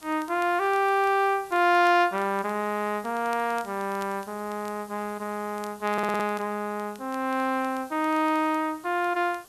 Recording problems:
hiss; SNR 24 dB
crackling; vinyl, SNR 26 dB
stutter; at 6 s

